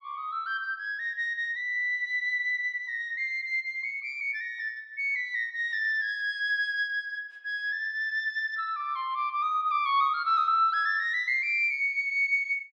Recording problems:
none

